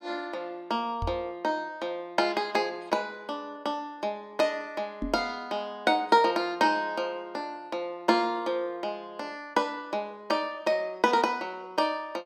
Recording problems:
microphone bump; at 1 s and at 5 s; peak -1 dB vs average level

